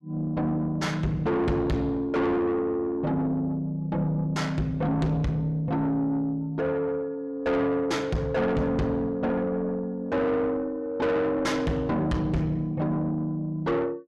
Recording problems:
distortion; soft clipping, signal-to-distortion ratio 6 dB

